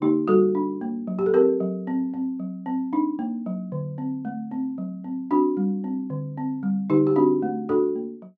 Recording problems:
none

